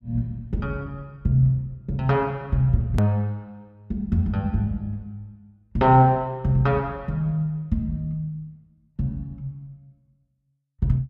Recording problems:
edit click; at 3 s

